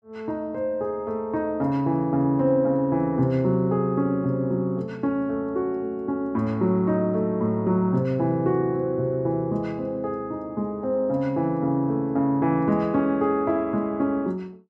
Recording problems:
none

